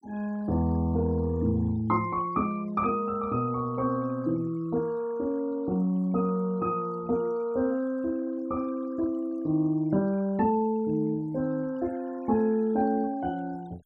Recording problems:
noise reduction artefacts; signal-to-artefact ratio 26 dB

